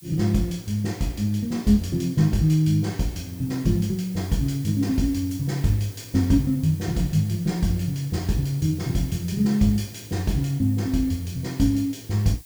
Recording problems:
hiss; slope +4 dB per octave, SNR 21 dB

